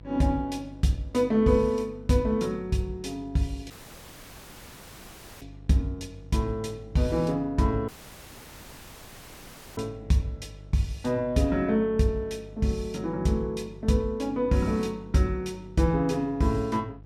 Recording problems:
hum; 50 Hz, harmonics up to 650 Hz, SNR 20 dB
dropout; at 3.5 s for 1.5 s and at 8 s for 2 s

